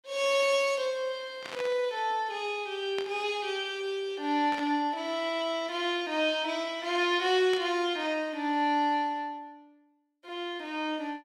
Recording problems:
static burst; 4 times, first at 1.5 s; peak -5 dB vs average level

